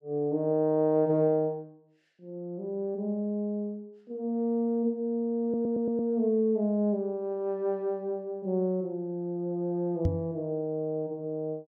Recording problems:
audio stuttering; at 5.5 s
microphone thump; at 10 s; peak +5 dB vs average level

